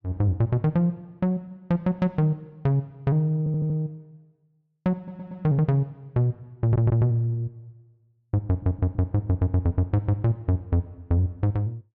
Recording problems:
stutter; 4 times, first at 3.5 s

